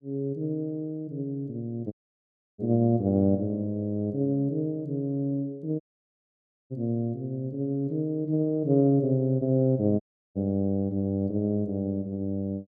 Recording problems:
audio cutting out; at 2 s for 0.5 s, at 6 s for 1 s and at 10 s

